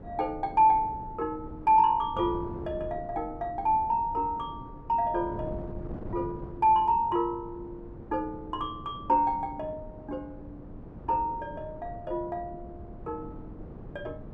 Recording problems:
wind noise; below 310 Hz, SNR 15 dB

